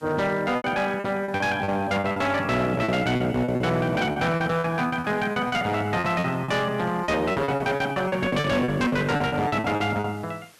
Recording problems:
distorted audio; hard clipping, signal-to-distortion ratio 10 dB
background hiss; slope 0 dB per octave, SNR 29 dB
packet loss; 15% of the sound replaced, filled with repeated pitch periods

